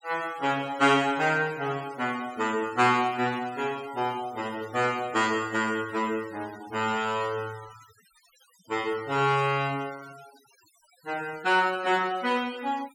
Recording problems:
denoising artefacts; signal-to-artefact ratio 20 dB

